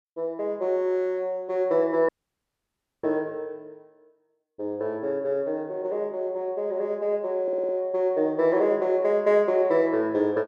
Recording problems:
audio cutting out; at 2 s for 1 s
audio stuttering; at 7.5 s

